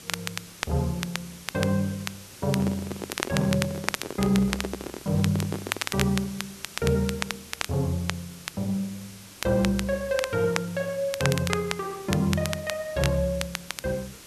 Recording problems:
background hiss; SNR 16 dB
crackling; vinyl, SNR 7 dB
handling noise; from 2.5 to 6 s; peak 0 dB vs average level

